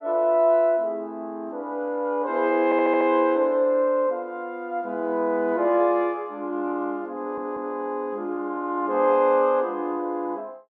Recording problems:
audio stuttering; at 2.5 s and at 7 s

